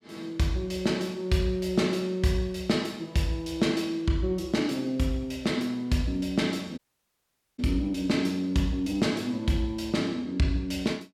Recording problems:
audio cutting out; at 7 s for 1 s

